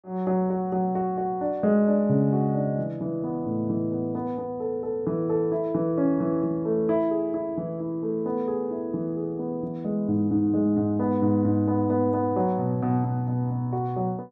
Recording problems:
none

